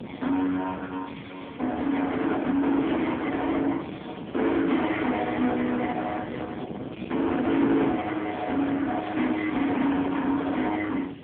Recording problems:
telephone audio; 130 Hz to 3.6 kHz, AMR-NB
distorted audio; soft clipping, signal-to-distortion ratio 7 dB
hiss; SNR 27 dB
wind on the microphone; below 760 Hz, SNR 13 dB

